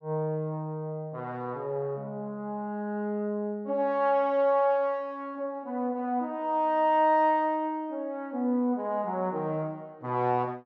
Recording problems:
none

